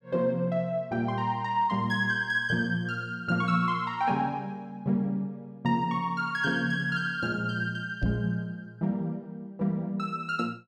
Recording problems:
microphone bump; at 8 s; peak +1 dB vs average level

